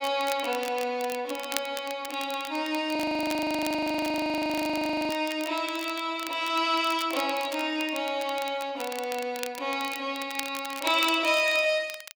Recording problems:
crackle; vinyl, SNR 13 dB
frozen audio; at 3 s for 2 s

